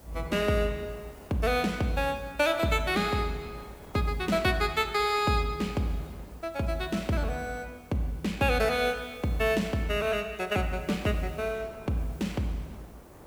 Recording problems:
background hiss; slope +2 dB per octave, SNR 28 dB
wind on the microphone; below 860 Hz, SNR 24 dB

